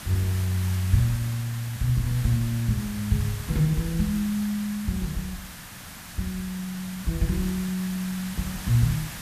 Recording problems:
hiss; SNR 11 dB

